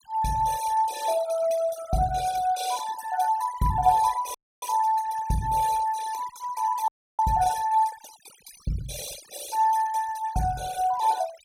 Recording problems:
noise reduction artefacts; signal-to-artefact ratio 15 dB
audio freezing; at 4.5 s and at 7 s

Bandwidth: 17.5 kHz